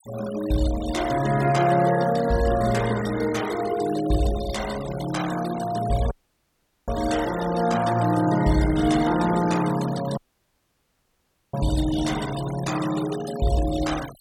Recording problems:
denoising artefacts; signal-to-artefact ratio 14 dB
audio cutting out; at 6 s for 1 s and at 10 s for 1.5 s

